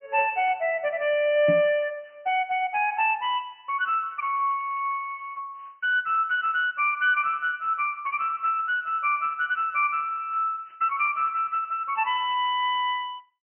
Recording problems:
treble missing; nothing above 2.5 kHz
lossy codec; Speex, log-spectral distance 3 dB
microphone bump; at 1.5 s; peak 0 dB vs average level

